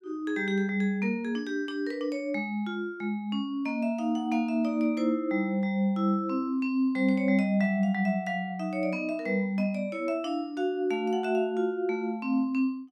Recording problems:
none

